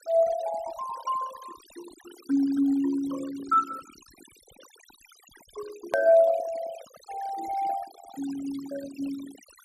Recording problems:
noise reduction artefacts; signal-to-artefact ratio 17 dB
edit click; at 6 s

